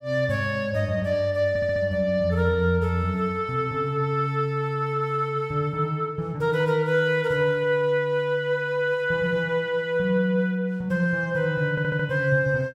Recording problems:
audio stuttering; at 1.5 s and at 12 s

